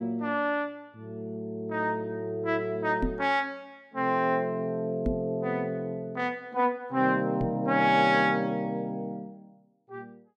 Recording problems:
microphone thump; at 3 s, at 5 s and at 7.5 s; peak +2 dB vs average level

